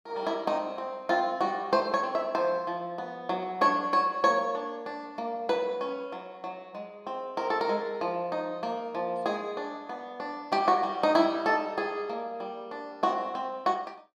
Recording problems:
none

